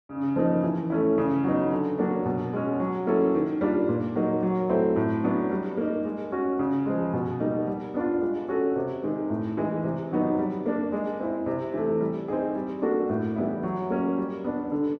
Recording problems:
none

